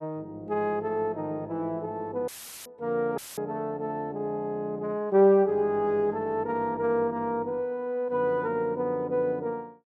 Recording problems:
audio cutting out; at 2.5 s and at 3 s; filled with static

